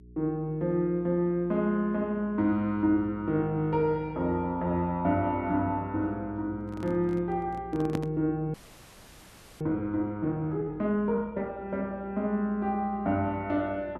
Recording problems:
hum; 60 Hz, harmonics up to 420 Hz, SNR 21 dB
microphone handling noise; from 6.5 to 8 s; peak 0 dB vs average level
audio freezing; at 8.5 s for 1 s

